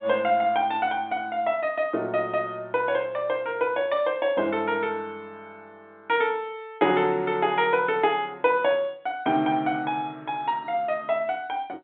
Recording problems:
telephone audio; 170 Hz to 3.7 kHz, G.711

